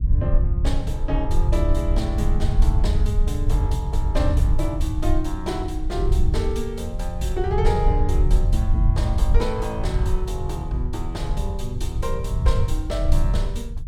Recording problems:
rumble; below 76 Hz, SNR -5 dB

